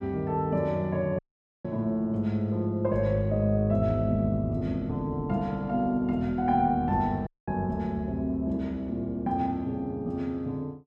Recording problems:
dropout; at 1 s and at 7.5 s

